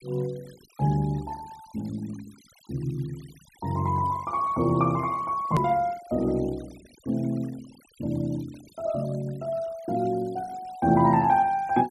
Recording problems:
noise reduction artefacts; signal-to-artefact ratio 24 dB
edit click; at 5.5 s

